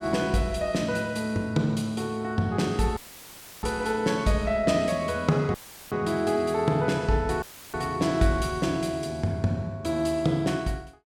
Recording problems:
audio cutting out; at 3 s for 0.5 s, at 5.5 s and at 7.5 s; filled with static

